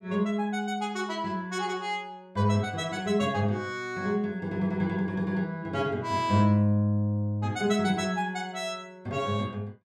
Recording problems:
none

